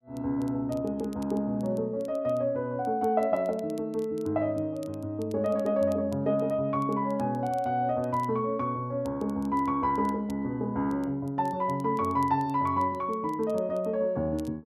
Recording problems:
crackle; vinyl, SNR 29 dB

